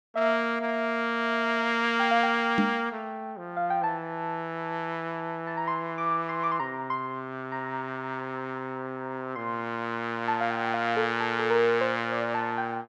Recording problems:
knock on the microphone; at 2.5 s; peak +6 dB vs average level

